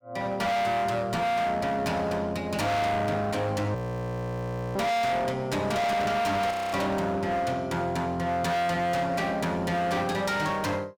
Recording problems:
distorted audio; hard clipping, uneven, signal-to-distortion ratio 5 dB
frozen audio; at 4 s for 1 s and at 6.5 s

